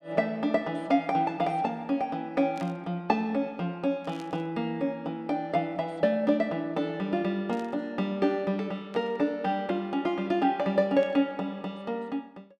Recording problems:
static burst; 5 times, first at 2.5 s; peak -15 dB vs average level

